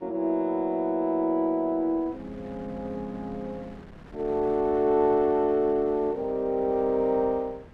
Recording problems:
wind noise; below 570 Hz, SNR 21 dB

